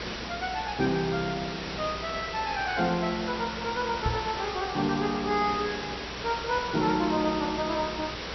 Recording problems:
treble cut off; nothing above 5.8 kHz
electrical hum; 60 Hz, harmonics up to 600 Hz, SNR 19 dB
background hiss; slope -2 dB per octave, SNR 6 dB
microphone bump; at 4 s; peak +3 dB vs average level

